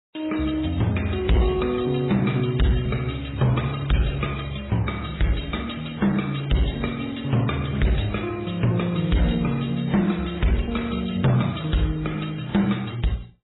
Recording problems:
lossy codec; MP3, then AAC, log-spectral distance 8 dB, nothing above 3.9 kHz
distortion; hard clipping, uneven, signal-to-distortion ratio 7 dB

